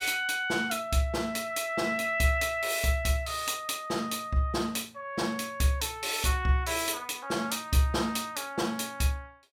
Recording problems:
none

